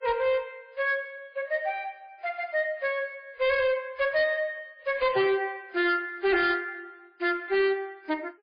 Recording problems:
codec artefacts; MP3, log-spectral distance 2 dB, nothing above 4.4 kHz
distortion; hard clipping, uneven, signal-to-distortion ratio 11 dB

